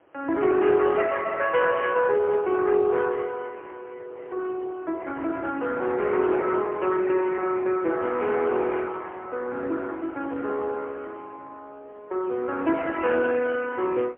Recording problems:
telephone audio; 280 Hz to 3 kHz, AMR-NB, then MP3
wind on the microphone; below 1.1 kHz, SNR 25 dB

